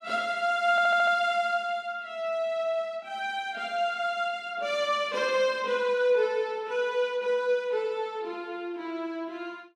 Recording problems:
stutter; at 0.5 s

